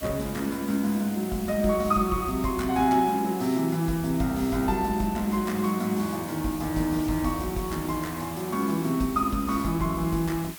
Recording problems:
background hiss; slope 0 dB per octave, SNR 14 dB

